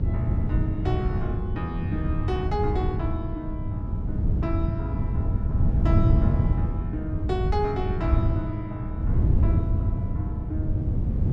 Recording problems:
electrical hum; 50 Hz, harmonics up to 700 Hz, SNR 8 dB
wind noise; below 130 Hz, SNR -6 dB

